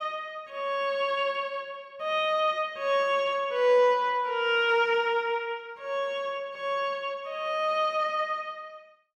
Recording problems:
none

